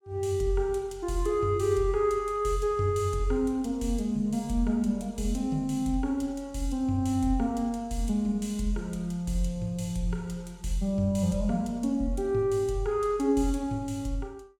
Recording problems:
none

